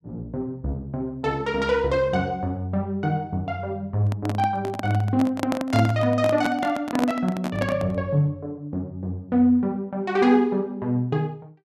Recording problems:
microphone handling noise; from 4 to 8 s; peak +2 dB vs average level

